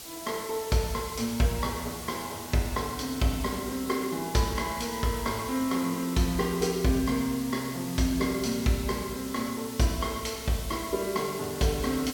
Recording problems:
hiss; SNR 11 dB

